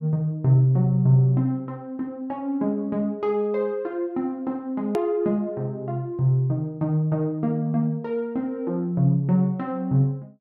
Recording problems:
edit click; at 5 s

